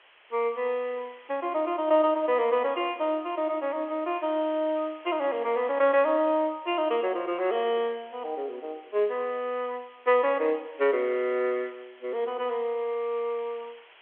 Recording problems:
telephone audio; 320 Hz to 3.4 kHz, G.711
hiss; SNR 26 dB

